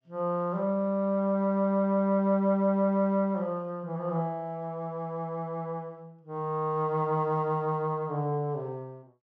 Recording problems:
none

